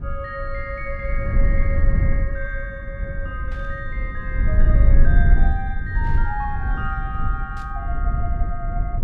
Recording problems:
low-frequency rumble; below 66 Hz, strongest tone 20 Hz, SNR -8 dB
burst of static; at 3.5 s, at 6 s and at 7.5 s; peak -11 dB vs average level

